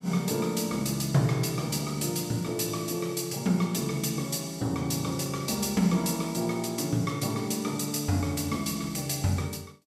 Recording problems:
none

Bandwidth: 15.5 kHz